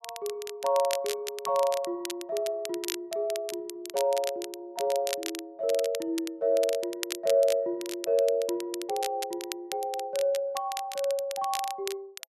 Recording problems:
crackle; vinyl, SNR 10 dB

